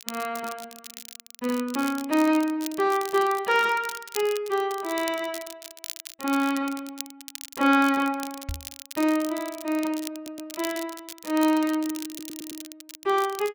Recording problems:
crackle; vinyl, SNR 14 dB
microphone bump; at 8.5 s; peak -4 dB vs average level
stutter; at 10 s and at 12 s

